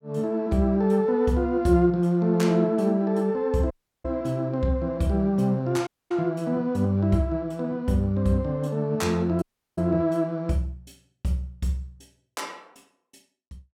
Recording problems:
audio cutting out; at 3.5 s, at 6 s and at 9.5 s

